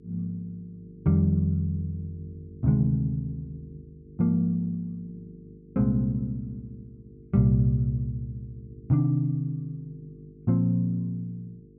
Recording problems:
hum; 50 Hz, harmonics up to 450 Hz, SNR 24 dB

